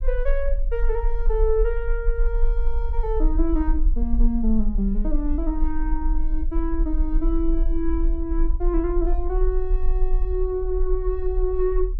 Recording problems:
low-frequency rumble; below 40 Hz, strongest tone 26 Hz, SNR -1 dB

